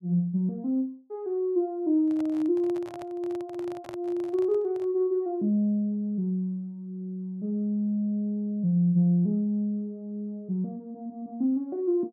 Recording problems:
handling noise; from 2 to 5 s; peak -10 dB vs average level

